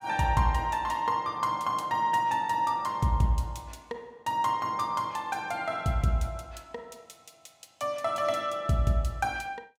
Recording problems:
none

